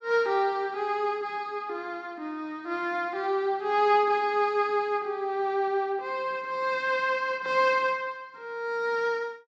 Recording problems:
none

